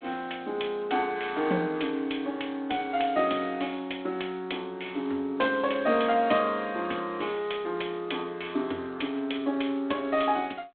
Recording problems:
telephone audio; 240 Hz to 3.5 kHz, G.726

